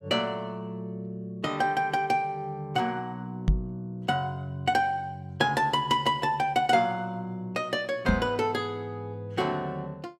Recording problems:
knock on the microphone; at 3.5 s and at 8 s; peak +8 dB vs average level

